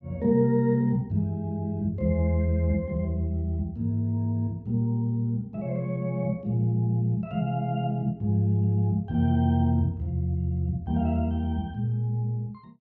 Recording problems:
none

